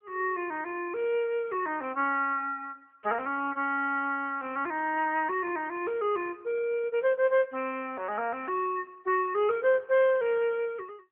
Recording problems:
phone line; 300 Hz to 3.1 kHz, AMR-NB

